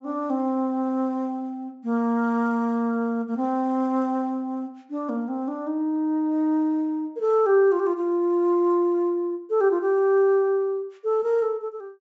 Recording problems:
treble missing; nothing above 8 kHz

